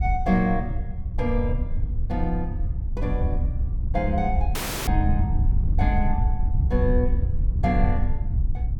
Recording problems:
wind on the microphone; below 80 Hz, SNR -2 dB
dropout; at 4.5 s

